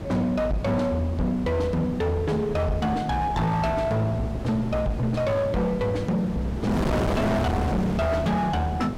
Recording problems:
distortion; hard clipping, signal-to-distortion ratio 7 dB
wind noise; below 620 Hz, SNR 6 dB

